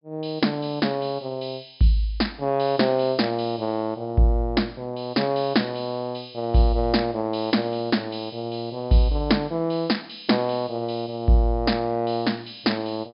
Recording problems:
treble missing; nothing above 5.5 kHz

